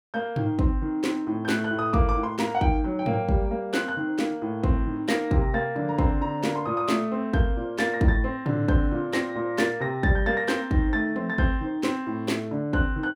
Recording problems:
none

